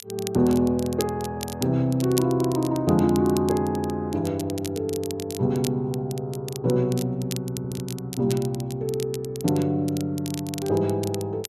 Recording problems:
crackle; vinyl, SNR 14 dB
audio stuttering; at 7.5 s

